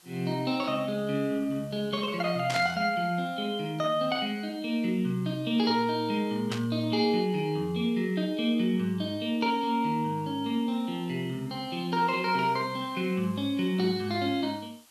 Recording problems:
hiss; slope 0 dB per octave, SNR 27 dB
static burst; at 2.5 s and at 6.5 s; peak -1 dB vs average level

